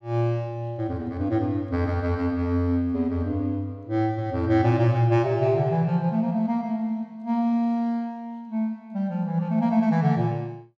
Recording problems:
none

